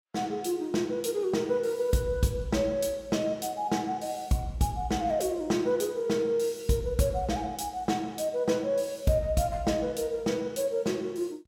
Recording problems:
none

